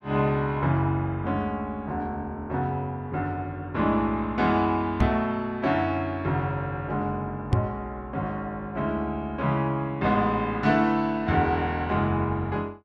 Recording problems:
knock on the microphone; at 5 s and at 7.5 s; peak +8 dB vs average level

